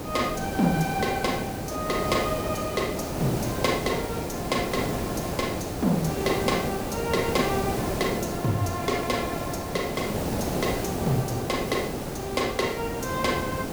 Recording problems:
hiss; SNR 2 dB

